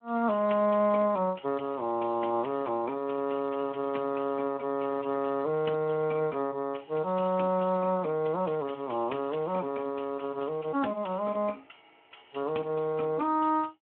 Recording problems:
phone line; 190 Hz to 2.4 kHz, Speex

